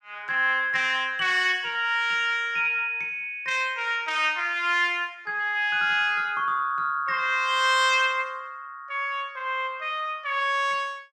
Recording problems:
none

